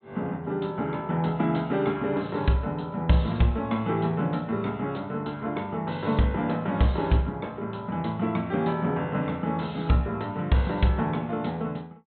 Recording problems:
low-pass filter; nothing above 4 kHz

